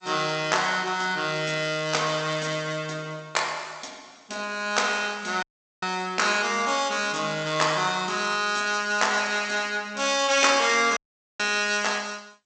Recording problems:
codec artefacts; G.722, log-spectral distance 6 dB, nothing above 8 kHz
dropout; at 5.5 s and at 11 s

